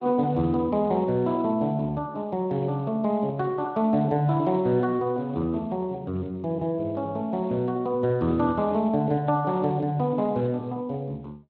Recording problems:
codec artefacts; Speex, log-spectral distance 2 dB

